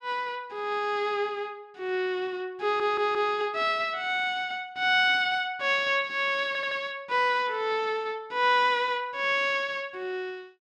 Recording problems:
stutter; at 2.5 s and at 6.5 s

